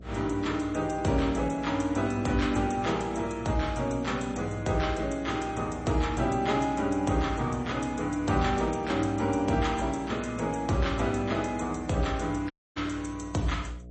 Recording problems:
lossy codec; MP3, log-spectral distance 4 dB, nothing above 8.2 kHz
hum; 60 Hz, harmonics up to 660 Hz, SNR 16 dB
dropout; at 13 s

